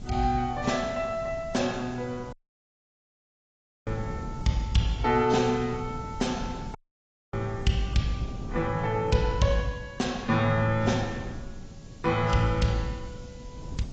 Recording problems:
lossy compression; AAC, log-spectral distance 5 dB, nothing above 7.3 kHz
hiss; SNR 28 dB
wind noise; below 190 Hz, SNR 13 dB
audio cutting out; at 2.5 s for 1.5 s and at 7 s for 0.5 s

